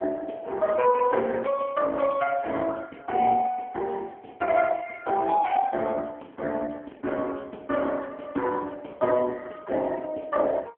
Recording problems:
telephone audio; 260 Hz to 3.1 kHz, AMR-NB

